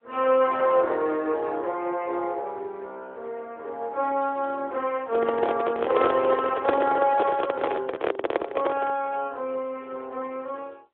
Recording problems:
telephone audio; 300 Hz to 3.7 kHz, AMR-NB
handling noise; from 5 to 9 s; peak +7 dB vs average level

